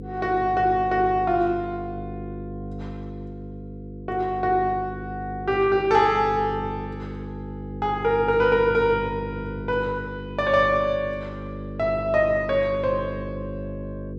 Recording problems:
hum; 50 Hz, harmonics up to 500 Hz, SNR 11 dB

